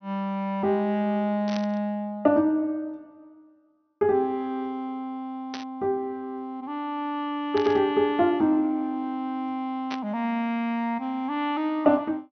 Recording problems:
treble missing; nothing above 6.1 kHz
static burst; 4 times, first at 1.5 s; peak -5 dB vs average level

